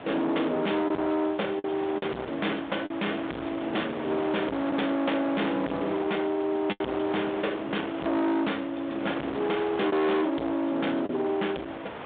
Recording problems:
phone line; 220 Hz to 3.7 kHz, G.726
distortion; hard clipping, uneven, signal-to-distortion ratio 6 dB
wind on the microphone; below 1.6 kHz, SNR 11 dB
lost packets; 3% of the sound replaced, filled with the last packet

